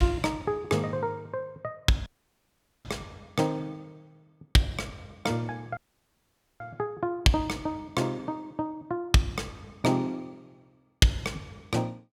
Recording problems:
audio cutting out; at 2 s for 1 s and at 6 s for 1 s

